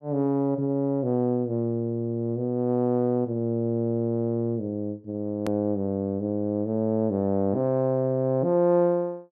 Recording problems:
hard cut with a click; at 5.5 s

